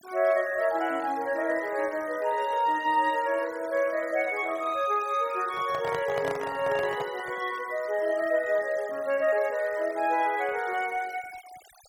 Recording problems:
noise reduction artefacts; signal-to-artefact ratio 20 dB
handling noise; from 5.5 to 7.5 s; peak -3 dB vs average level

